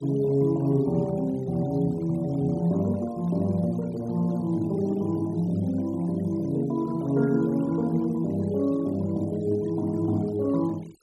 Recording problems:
denoising artefacts; signal-to-artefact ratio 25 dB

